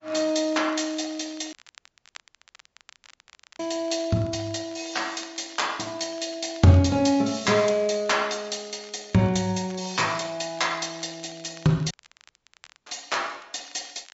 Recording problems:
treble missing; nothing above 7.6 kHz
codec artefacts; MP3, log-spectral distance 5 dB
crackle; vinyl, SNR 26 dB
audio cutting out; at 1.5 s for 2 s and at 12 s for 1 s

